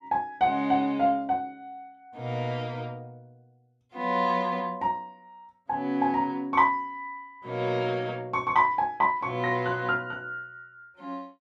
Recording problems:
none

